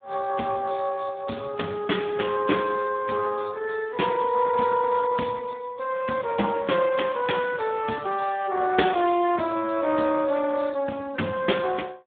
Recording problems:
phone line; 190 Hz to 3.6 kHz, Speex

